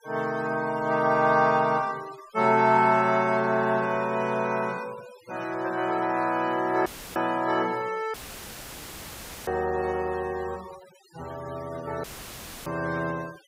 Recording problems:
denoising artefacts; signal-to-artefact ratio 21 dB
dropout; at 7 s, at 8 s for 1.5 s and at 12 s for 0.5 s; filled with static

